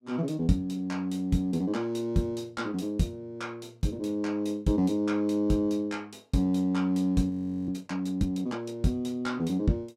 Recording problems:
audio freezing; at 7.5 s

